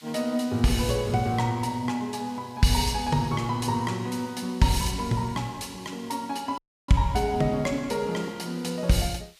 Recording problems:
hiss; SNR 25 dB
audio cutting out; at 6.5 s

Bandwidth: 15 kHz